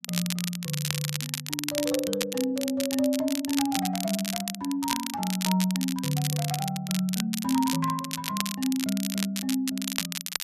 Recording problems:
crackling; vinyl, SNR 4 dB

